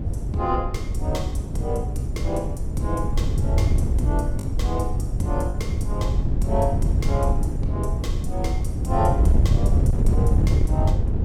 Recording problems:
wind noise; below 110 Hz, SNR -5 dB
lost packets; 1.2% of the sound replaced, filled with the last packet

